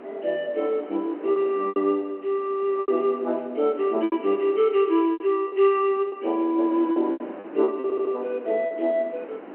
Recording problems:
phone line; 260 Hz to 3.1 kHz, G.711
wind on the microphone; below 730 Hz, SNR 19 dB
packet loss; 8% of the sound replaced, filled with repeated pitch periods
audio stuttering; at 8 s

